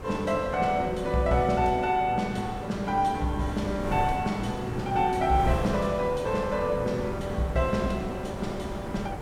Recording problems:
wind noise; below 560 Hz, SNR 9 dB

